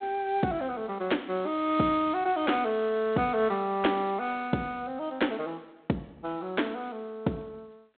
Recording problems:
phone line; 170 Hz to 3.7 kHz, G.726

